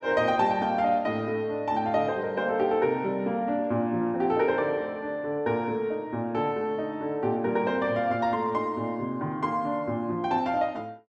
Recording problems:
none

